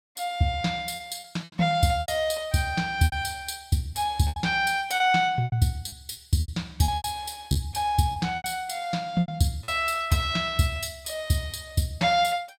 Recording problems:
packet loss; 9% of the sound replaced, filled with repeated pitch periods

